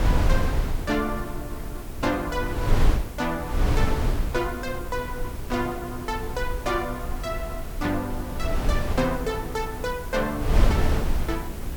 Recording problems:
electrical hum; 60 Hz, harmonics up to 420 Hz, SNR 15 dB
background hiss; SNR 15 dB
wind on the microphone; below 110 Hz, SNR -1 dB

